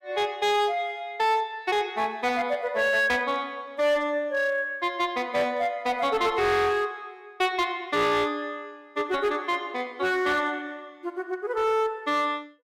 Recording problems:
distorted audio; hard clipping, signal-to-distortion ratio 12 dB

